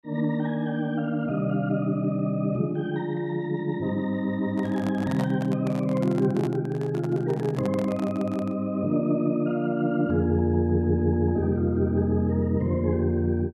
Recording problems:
microphone handling noise; from 4.5 to 8.5 s; peak -4 dB vs average level

